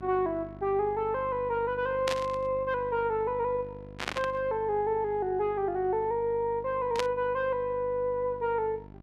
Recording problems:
electrical hum; 50 Hz, harmonics up to 1.4 kHz, SNR 17 dB
static burst; at 2 s, at 4 s and at 7 s; peak +2 dB vs average level

